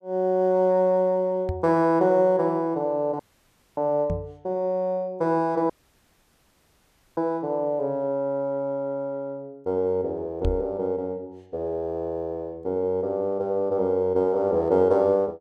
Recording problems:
microphone bump; at 1.5 s, at 4 s and at 10 s; peak +1 dB vs average level
audio cutting out; at 3 s for 0.5 s and at 5.5 s for 1.5 s

